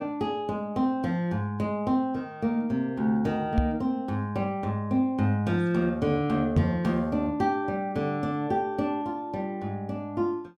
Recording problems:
microphone bump; at 3.5 s and at 6.5 s; peak +7 dB vs average level

